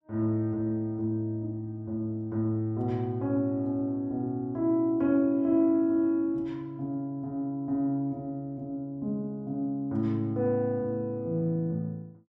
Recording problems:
none

